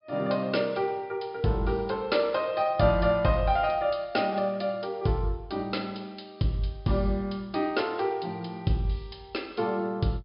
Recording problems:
low-pass filter; nothing above 5.5 kHz

